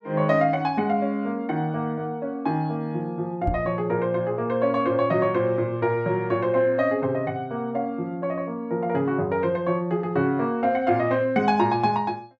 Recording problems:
knock on the microphone; at 3.5 s; peak +1 dB vs average level

